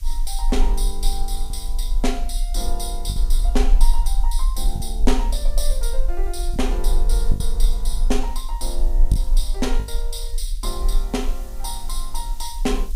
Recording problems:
background hiss; slope +3 dB per octave, SNR 20 dB
low-frequency rumble; below 36 Hz, strongest tone 18 Hz, SNR -4 dB
lost packets; 3% of the sound replaced, filled with the last packet

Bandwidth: 15.5 kHz